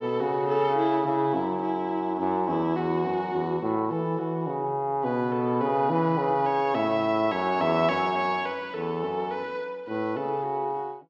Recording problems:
none

